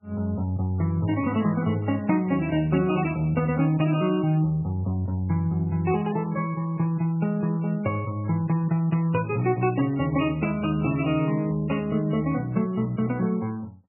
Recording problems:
codec artefacts; MP3, log-spectral distance 2 dB, nothing above 2.8 kHz

